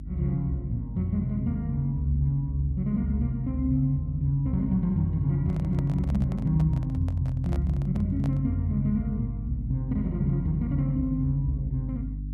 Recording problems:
mains hum; 50 Hz, harmonics up to 300 Hz, SNR 9 dB
handling noise; from 5.5 to 8.5 s; peak -11 dB vs average level

